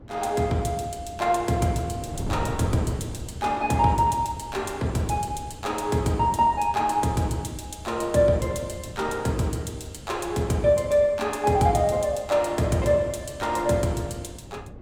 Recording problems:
wind noise; below 280 Hz, SNR 16 dB

